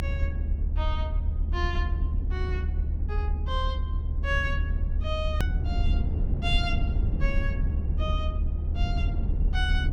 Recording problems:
low-frequency rumble; below 74 Hz, SNR -6 dB
edit click; at 5.5 s

